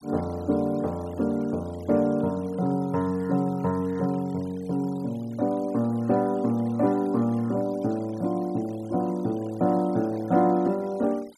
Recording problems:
noise reduction artefacts; signal-to-artefact ratio 26 dB

